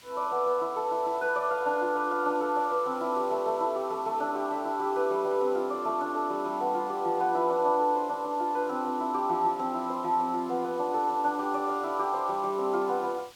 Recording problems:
hiss; slope 0 dB per octave, SNR 25 dB

